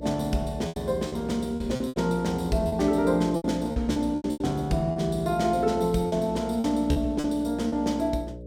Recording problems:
hum; 60 Hz, harmonics up to 600 Hz, SNR 14 dB
lost packets; 11% of the sound replaced, filled with repeated pitch periods

